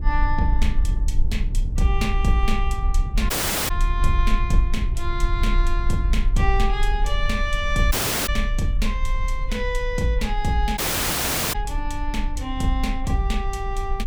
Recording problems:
rumble; below 46 Hz, strongest tone 32 Hz, SNR 0 dB
dropout; at 3.5 s, at 8 s and at 11 s for 1 s

